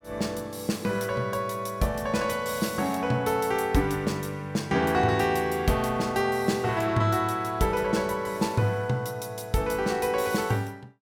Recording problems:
none

